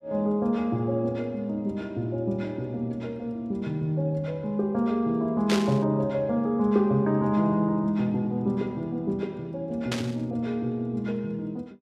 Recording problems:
burst of static; at 5.5 s and at 10 s; peak +1 dB vs average level

